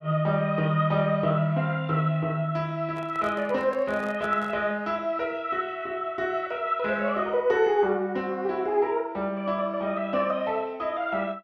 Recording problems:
handling noise; from 3 to 4.5 s; peak -10 dB vs average level

